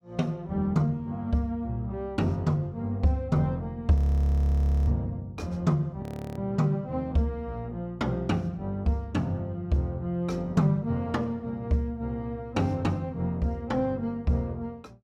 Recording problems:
frozen audio; at 4 s for 1 s and at 6 s

